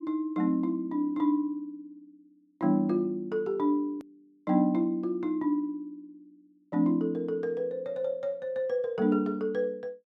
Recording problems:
edit click; at 4 s

